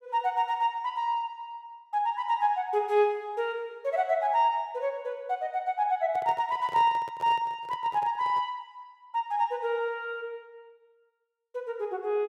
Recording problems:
handling noise; from 6 to 8.5 s; peak -9 dB vs average level

